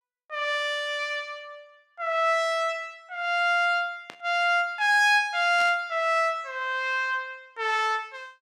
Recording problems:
burst of static; at 4 s and at 5.5 s; peak -10 dB vs average level

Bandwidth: 16 kHz